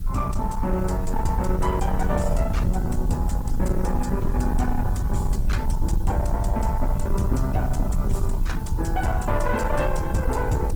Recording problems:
codec artefacts; Opus, log-spectral distance 2 dB, nothing above 19 kHz
distortion; soft clipping, signal-to-distortion ratio 10 dB
hiss; slope +1 dB per octave, SNR 25 dB
rumble; below 82 Hz, SNR 1 dB

